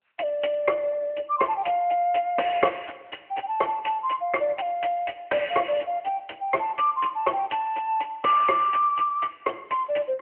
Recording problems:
phone line; 280 Hz to 3.1 kHz, AMR-NB

